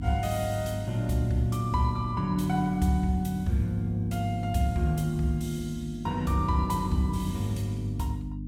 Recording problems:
electrical hum; 50 Hz, harmonics up to 300 Hz, SNR 11 dB

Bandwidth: 17 kHz